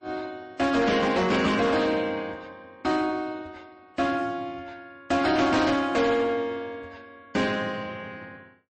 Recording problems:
codec artefacts; MP3, then MP3, log-spectral distance 2 dB, nothing above 8.2 kHz
distorted audio; soft clipping, signal-to-distortion ratio 11 dB

